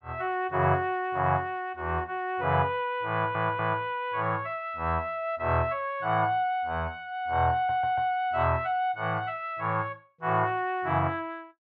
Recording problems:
stutter; at 3 s and at 7.5 s

